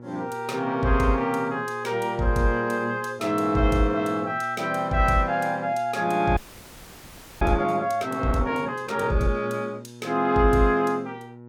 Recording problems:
hum; 60 Hz, harmonics up to 1.4 kHz, SNR 20 dB
frozen audio; at 6.5 s for 1 s

